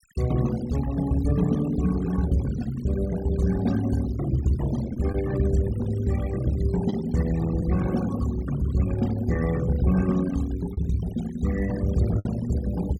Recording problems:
denoising artefacts; signal-to-artefact ratio 16 dB
packet loss; 1.4% of the sound replaced, filled with the last packet

